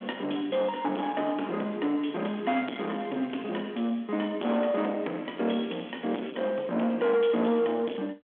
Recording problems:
phone line; 240 Hz to 3.5 kHz, G.726
distorted audio; soft clipping, signal-to-distortion ratio 8 dB
crackling; at 2 s, at 3 s and from 5 to 6.5 s; loose cable, SNR 25 dB

